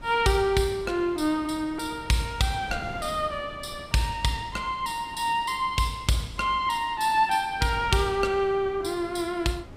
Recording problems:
wind noise; below 450 Hz, SNR 18 dB

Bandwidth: 15.5 kHz